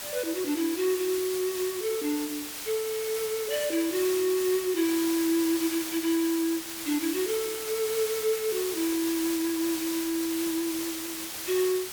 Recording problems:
background hiss; slope 0 dB per octave, SNR 5 dB

